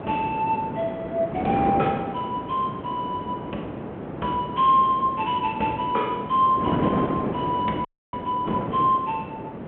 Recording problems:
telephone audio; 240 Hz to 3.8 kHz, G.726
wind noise; below 600 Hz, SNR 6 dB
audio freezing; at 8 s

